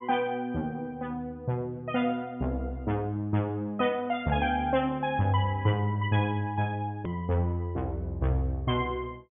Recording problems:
low-pass filter; nothing above 3.5 kHz
hard cut with a click; at 7 s

